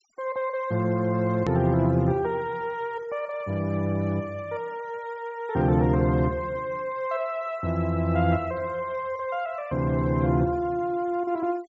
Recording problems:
treble cut off; nothing above 8 kHz
noise reduction artefacts; signal-to-artefact ratio 26 dB
click at an edit; at 1.5 s

